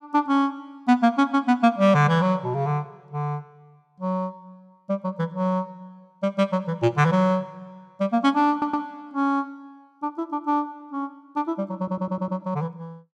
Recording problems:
audio stuttering; at 8.5 s and at 12 s

